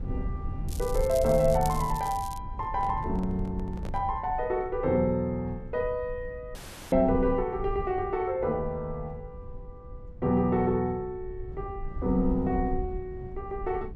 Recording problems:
rumble; below 86 Hz, SNR 10 dB
crackling; from 0.5 to 2.5 s; loose cable, SNR 15 dB
handling noise; from 2.5 to 4 s; peak -9 dB vs average level
audio cutting out; at 6.5 s

